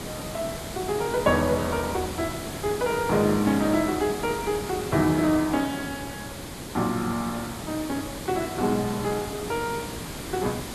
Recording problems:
hiss; slope -4 dB per octave, SNR 8 dB

